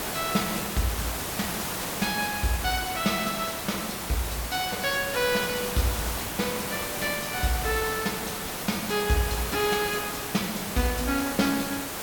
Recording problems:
background hiss; slope -3 dB per octave, SNR 2 dB

